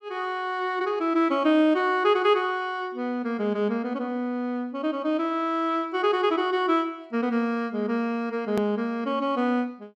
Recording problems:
edit click; at 8.5 s

